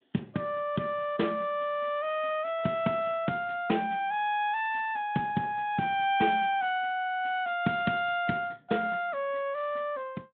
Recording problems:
telephone audio; 150 Hz to 3.6 kHz, Speex

